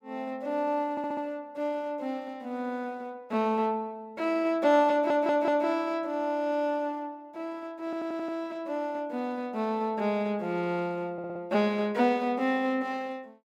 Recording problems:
audio stuttering; 4 times, first at 1 s

